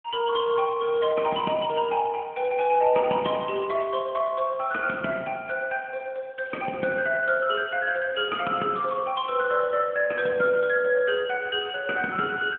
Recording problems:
phone line; 190 Hz to 3.3 kHz, AMR-NB

